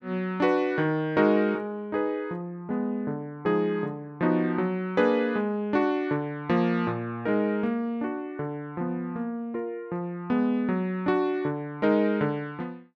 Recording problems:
none

